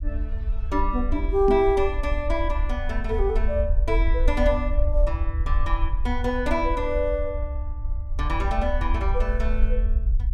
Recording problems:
rumble; below 56 Hz, SNR 1 dB
microphone bump; at 1.5 s; peak +3 dB vs average level

